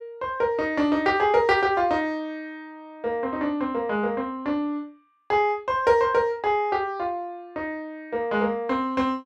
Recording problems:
none

